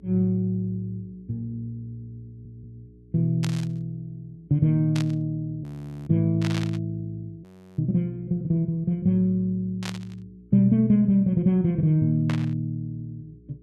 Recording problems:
hum; 60 Hz, harmonics up to 420 Hz, SNR 29 dB
stutter; at 2.5 s
burst of static; 5 times, first at 3.5 s; peak -5 dB vs average level
frozen audio; at 5.5 s and at 7.5 s

